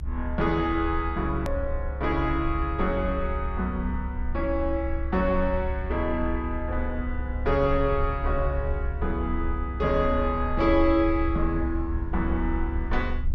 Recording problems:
hum; 50 Hz, harmonics up to 500 Hz, SNR 16 dB
rumble; below 68 Hz, SNR 4 dB
hard cut with a click; at 1.5 s

